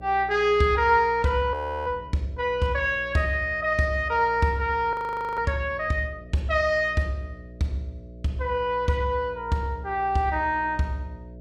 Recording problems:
hum; 60 Hz, harmonics up to 660 Hz, SNR 19 dB
audio freezing; at 1.5 s and at 5 s

